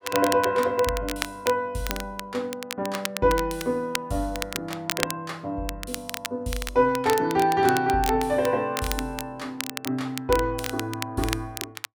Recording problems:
crackling; vinyl, SNR 8 dB

